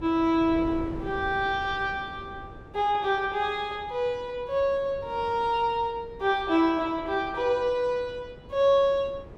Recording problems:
wind on the microphone; below 410 Hz, SNR 18 dB

